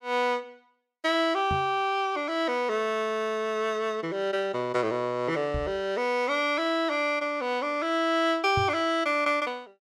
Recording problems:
microphone thump; at 1.5 s, at 5.5 s and at 8.5 s; peak -1 dB vs average level

